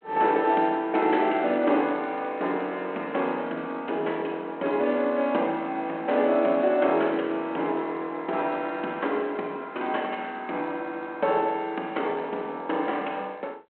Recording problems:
telephone audio; 220 Hz to 3.4 kHz, G.726

